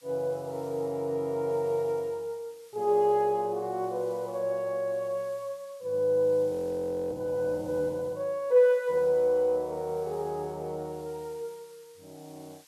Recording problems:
background hiss; SNR 27 dB
frozen audio; at 6.5 s for 0.5 s

